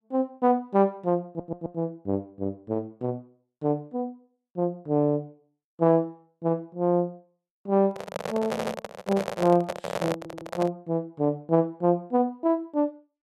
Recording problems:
audio stuttering; at 1.5 s, at 8.5 s and at 10 s
microphone handling noise; from 8 to 11 s; peak +1 dB vs average level

